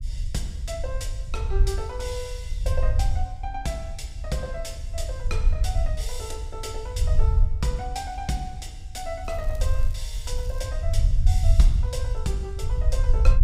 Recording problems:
low-frequency rumble; below 70 Hz, SNR -6 dB
crackling; from 9.5 to 11 s; loose cable, SNR 18 dB

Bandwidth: 15.5 kHz